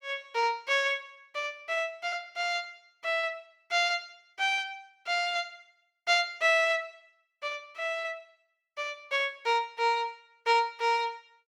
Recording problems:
none

